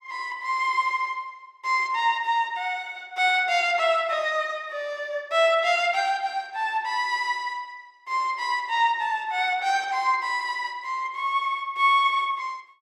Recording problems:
none

